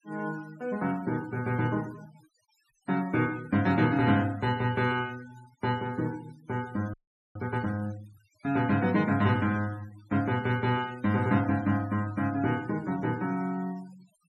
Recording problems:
denoising artefacts; signal-to-artefact ratio 20 dB
audio freezing; at 7 s

